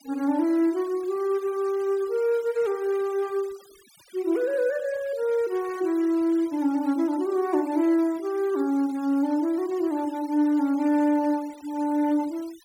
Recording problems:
noise reduction artefacts; signal-to-artefact ratio 24 dB

